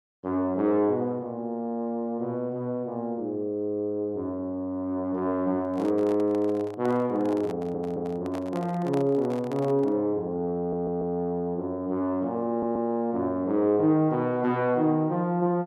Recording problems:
handling noise; from 5.5 to 10 s; peak -6 dB vs average level
audio stuttering; at 7.5 s, at 11 s and at 13 s

